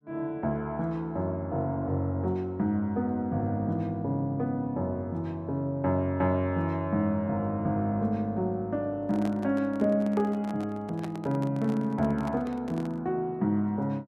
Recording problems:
handling noise; from 9 to 13 s; peak -6 dB vs average level

